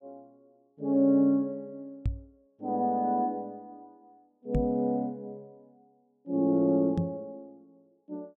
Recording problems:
knock on the microphone; at 2 s, at 4.5 s and at 7 s; peak +2 dB vs average level

